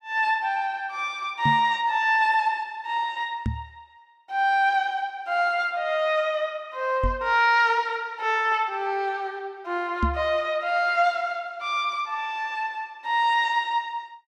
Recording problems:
microphone thump; 4 times, first at 1.5 s; peak +2 dB vs average level

